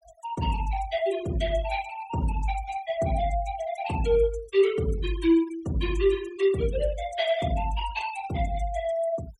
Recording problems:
noise reduction artefacts; signal-to-artefact ratio 18 dB

